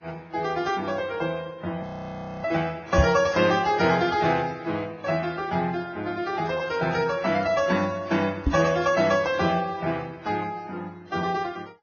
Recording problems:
lossy compression; Vorbis, then AAC, log-spectral distance 3 dB, nothing above 5.8 kHz
frozen audio; at 2 s for 0.5 s
microphone bump; at 3 s and at 8.5 s; peak +8 dB vs average level

